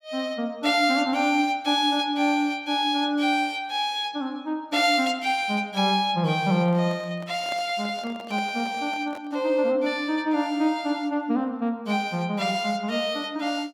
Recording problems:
handling noise; from 6.5 to 9.5 s; peak -10 dB vs average level

